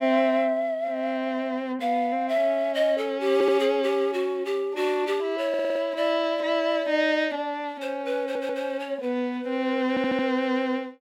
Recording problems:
stutter; 4 times, first at 3.5 s

